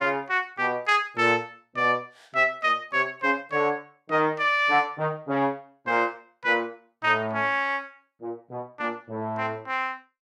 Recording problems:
none

